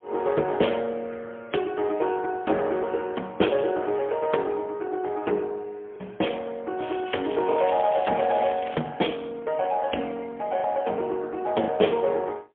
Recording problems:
telephone audio; 240 Hz to 3.4 kHz, AMR-NB, then MP3
lost packets; 1.3% of the sound replaced, filled with the last packet
crackling; from 7 to 9 s; loose cable, SNR 15 dB

